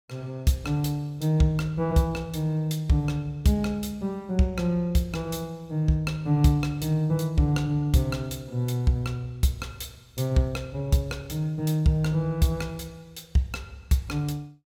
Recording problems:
none

